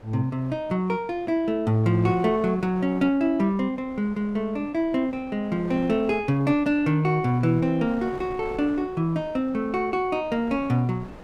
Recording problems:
wind on the microphone; below 750 Hz, SNR 20 dB

